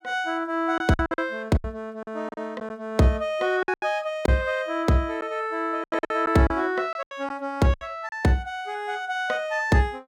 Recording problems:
packet loss; 9% of the sound replaced, filled with silence

